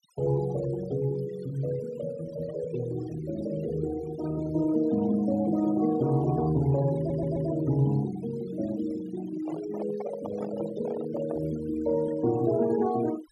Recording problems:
denoising artefacts; signal-to-artefact ratio 17 dB
audio stuttering; at 7 s
handling noise; from 9.5 to 11 s; peak -6 dB vs average level

